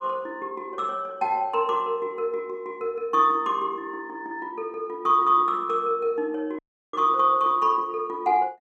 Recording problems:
dropout; at 6.5 s

